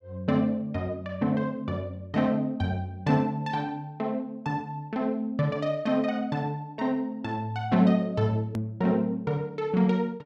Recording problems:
edit click; at 8.5 s

